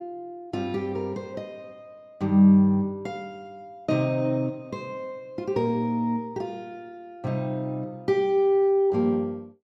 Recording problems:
none

